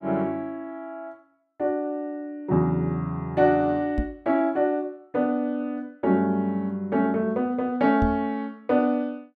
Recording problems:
microphone thump; at 4 s and at 8 s; peak +1 dB vs average level

